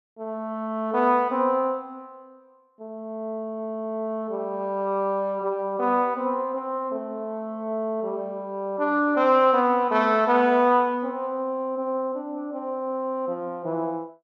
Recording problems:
none

